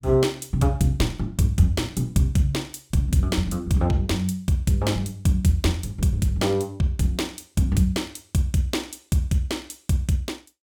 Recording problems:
none

